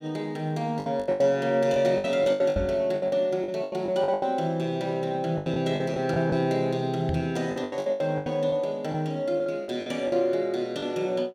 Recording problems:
lost packets; 14% of the sound replaced, filled with the last packet
microphone bump; at 2.5 s and at 7 s; peak +1 dB vs average level

